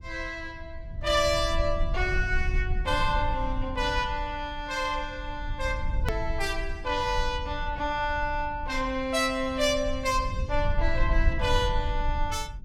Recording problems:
low-frequency rumble; below 62 Hz, SNR 5 dB
hard cut with a click; at 6 s

